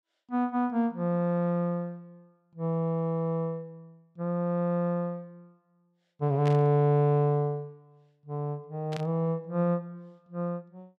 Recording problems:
burst of static; at 6.5 s and at 9 s; peak -8 dB vs average level

